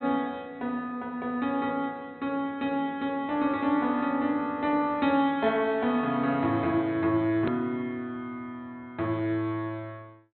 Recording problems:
low-pass filter; nothing above 4.1 kHz
hard cut with a click; at 7.5 s

